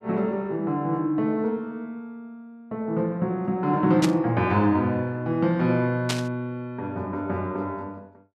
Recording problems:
burst of static; at 4 s and at 6 s; peak +2 dB vs average level

